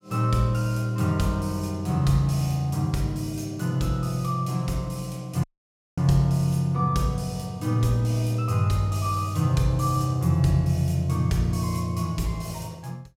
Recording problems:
dropout; at 5.5 s for 0.5 s

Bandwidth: 16.5 kHz